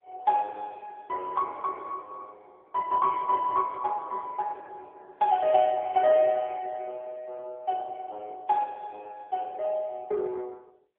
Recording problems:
phone line; 340 Hz to 3.4 kHz, AMR-NB

